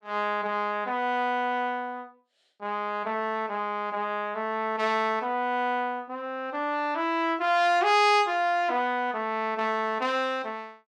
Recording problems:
none

